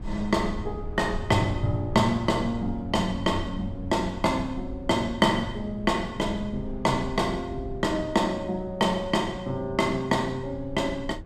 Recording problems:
low-frequency rumble; below 100 Hz, SNR 13 dB

